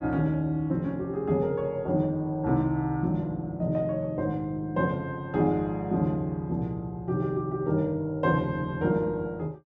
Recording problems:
none

